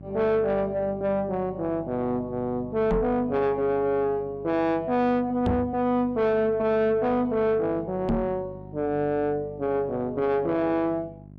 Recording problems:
distortion; soft clipping, signal-to-distortion ratio 10 dB
hum; 50 Hz, harmonics up to 650 Hz, SNR 18 dB
microphone thump; at 3 s, at 5.5 s and at 8 s; peak +4 dB vs average level

